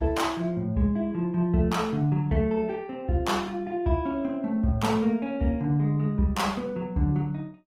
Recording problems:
lossy codec; Opus, log-spectral distance 2 dB, nothing above 17.7 kHz

